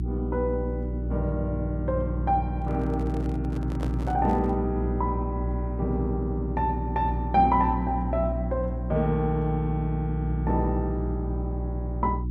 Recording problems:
hum; 60 Hz, harmonics up to 360 Hz, SNR 3 dB
handling noise; from 2.5 to 4.5 s; peak -5 dB vs average level

